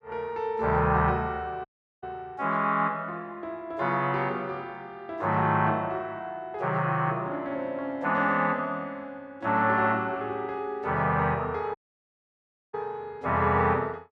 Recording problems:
audio cutting out; at 1.5 s and at 12 s for 1 s

